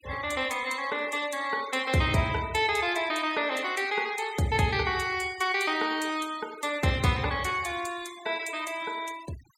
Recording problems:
noise reduction artefacts; signal-to-artefact ratio 17 dB

